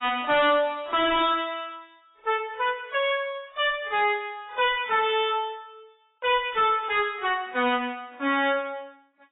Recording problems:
lossy compression; AAC, log-spectral distance 3 dB, nothing above 3.7 kHz
distortion; soft clipping, signal-to-distortion ratio 6 dB

